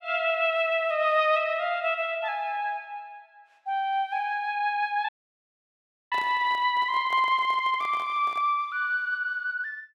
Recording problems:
dropout; at 5 s for 1 s
microphone handling noise; from 6 to 8.5 s; peak -10 dB vs average level

